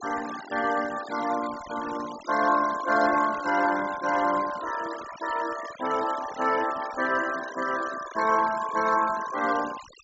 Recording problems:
treble missing; nothing above 8 kHz
denoising artefacts; signal-to-artefact ratio 13 dB

